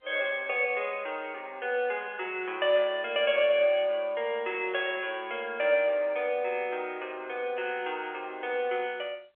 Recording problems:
phone line; 320 Hz to 3.4 kHz, G.711

